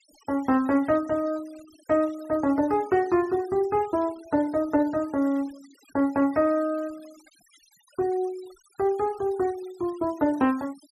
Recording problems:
noise reduction artefacts; signal-to-artefact ratio 25 dB

